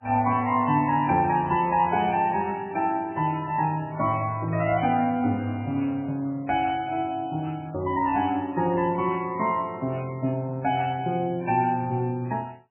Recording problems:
codec artefacts; MP3, log-spectral distance 3 dB, nothing above 2.5 kHz

